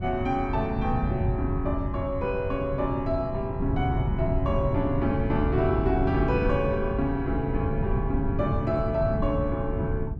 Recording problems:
wind noise; below 140 Hz, SNR 2 dB

